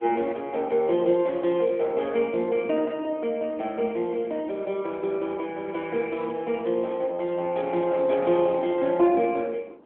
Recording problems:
telephone audio; 260 Hz to 3.5 kHz, AMR-NB
wind noise; below 570 Hz, SNR 21 dB

